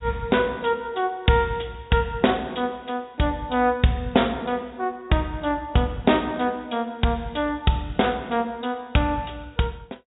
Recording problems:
low-pass filter; nothing above 4 kHz

